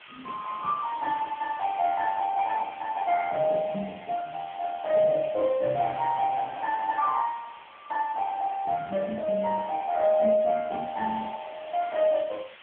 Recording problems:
telephone audio; 320 Hz to 2.1 kHz, AMR-NB
background hiss; SNR 21 dB

